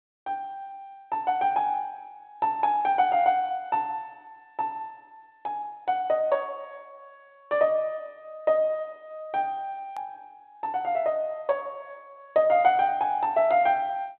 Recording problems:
telephone audio; 170 Hz to 3.4 kHz, G.726
edit click; at 10 s

